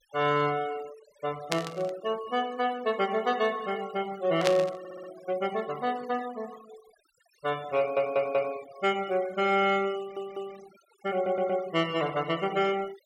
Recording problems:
denoising artefacts; signal-to-artefact ratio 19 dB
static burst; at 1.5 s and at 4.5 s; peak +4 dB vs average level
audio stuttering; 4 times, first at 5 s

